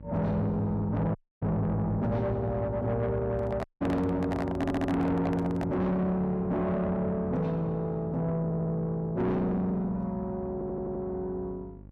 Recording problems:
distortion; soft clipping, signal-to-distortion ratio 7 dB
hum; 50 Hz, harmonics up to 600 Hz, SNR 19 dB
dropout; at 1 s and at 3.5 s
handling noise; from 3.5 to 5.5 s; peak +1 dB vs average level
stutter; at 4.5 s, at 8.5 s and at 11 s

